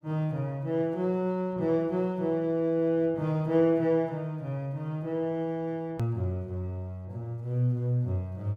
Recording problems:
hard cut with a click; at 6 s

